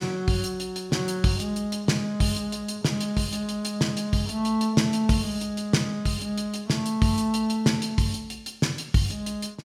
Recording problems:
none

